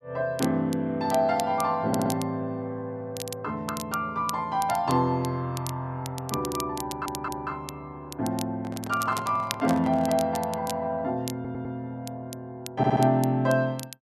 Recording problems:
crackling; vinyl, SNR 13 dB
audio stuttering; 4 times, first at 2 s
handling noise; from 8.5 to 10 s; peak -2 dB vs average level

